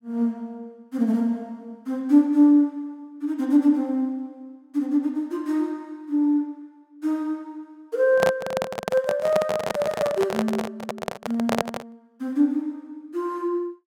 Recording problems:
handling noise; from 8 to 12 s; peak +4 dB vs average level

